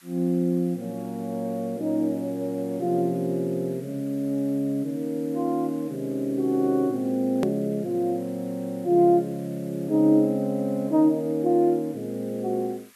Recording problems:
hiss; SNR 27 dB
click at an edit; at 7.5 s

